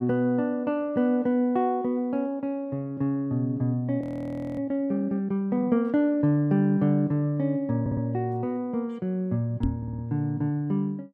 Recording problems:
frozen audio; at 4 s for 0.5 s
audio stuttering; at 8 s and at 10 s
microphone thump; at 9.5 s; peak +3 dB vs average level

